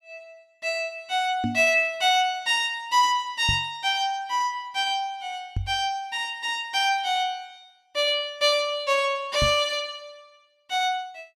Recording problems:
microphone thump; 4 times, first at 1.5 s; peak 0 dB vs average level

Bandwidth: 16 kHz